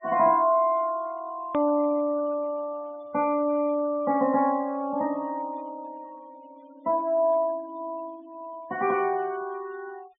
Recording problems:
treble missing; nothing above 3.6 kHz
noise reduction artefacts; signal-to-artefact ratio 28 dB
click at an edit; at 1.5 s

